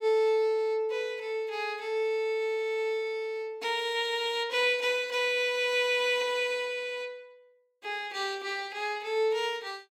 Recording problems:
none

